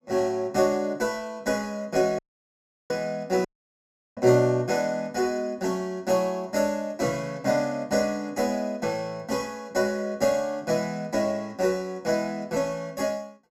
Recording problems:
audio cutting out; at 2 s for 0.5 s and at 3.5 s for 0.5 s

